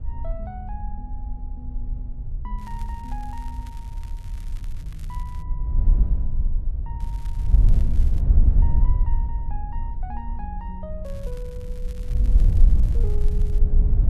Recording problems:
wind on the microphone; below 58 Hz, SNR -15 dB
crackling; from 2.5 to 5.5 s, from 7 to 8 s and from 11 to 14 s; loose cable, SNR 12 dB

